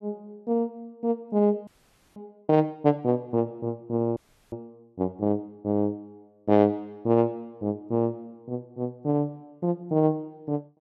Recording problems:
frozen audio; at 1.5 s and at 4 s

